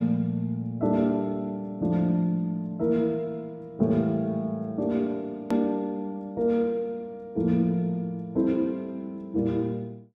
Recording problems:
click at an edit; at 5.5 s

